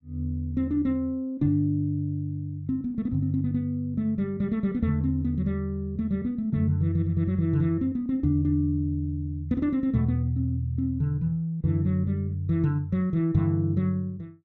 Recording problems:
none

